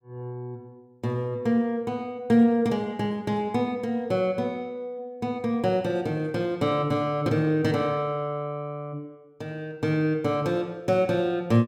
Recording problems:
none

